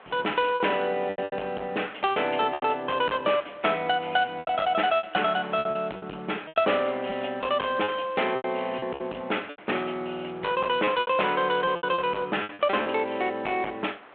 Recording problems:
phone line; 300 Hz to 3.4 kHz, G.726
distortion; hard clipping, uneven, signal-to-distortion ratio 11 dB
wind on the microphone; below 2 kHz, SNR 22 dB
lost packets; 10% of the sound replaced, filled with repeated pitch periods

